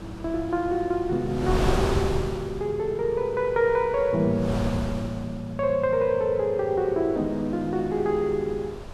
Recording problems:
wind on the microphone; below 610 Hz, SNR 8 dB

